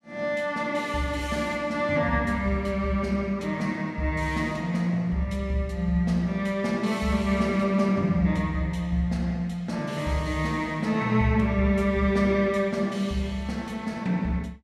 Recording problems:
none

